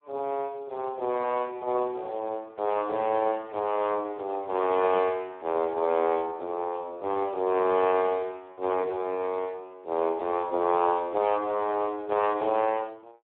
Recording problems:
telephone audio; 280 Hz to 2.9 kHz, Speex

